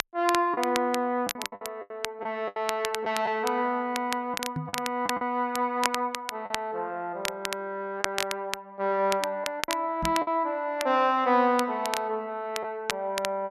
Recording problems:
crackling; vinyl, SNR 7 dB
lost packets; 6% of the sound replaced, filled with the last packet
microphone thump; at 4.5 s and at 10 s; peak -1 dB vs average level

